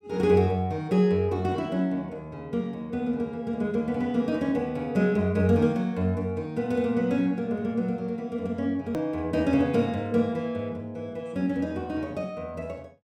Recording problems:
hard cut with a click; at 9 s

